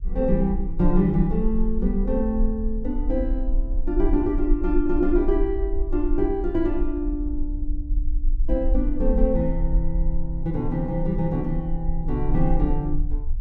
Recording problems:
low-frequency rumble; below 42 Hz, strongest tone 18 Hz, SNR 4 dB

